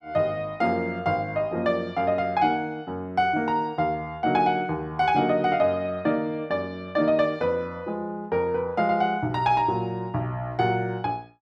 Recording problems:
none

